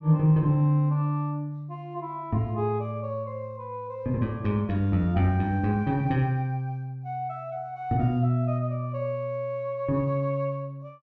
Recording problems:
none

